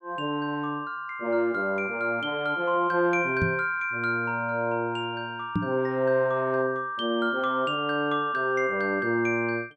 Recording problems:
knock on the microphone; at 3.5 s and at 5.5 s; peak +4 dB vs average level

